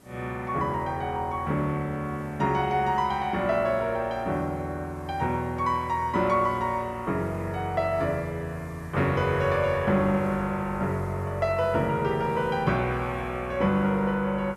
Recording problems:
background hiss; SNR 27 dB

